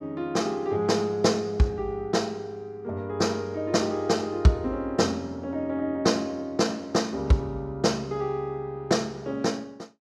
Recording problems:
none

